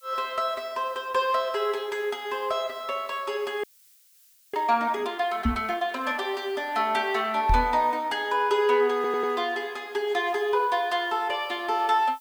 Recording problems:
background hiss; SNR 29 dB
audio freezing; at 3.5 s for 1 s
knock on the microphone; at 5.5 s and at 7.5 s; peak +5 dB vs average level
stutter; at 9 s

